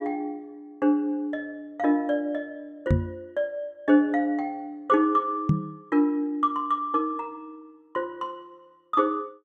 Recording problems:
microphone bump; at 3 s and at 5.5 s; peak +8 dB vs average level

